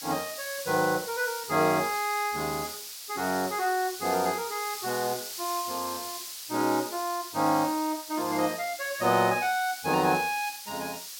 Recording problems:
background hiss; slope +5 dB per octave, SNR 9 dB

